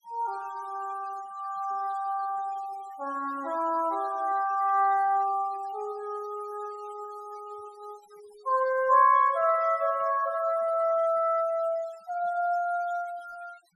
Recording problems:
denoising artefacts; signal-to-artefact ratio 24 dB

